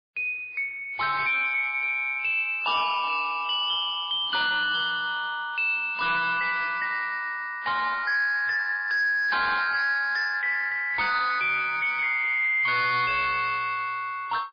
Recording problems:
codec artefacts; MP3, log-spectral distance 4 dB, nothing above 5 kHz
distortion; soft clipping, signal-to-distortion ratio 10 dB

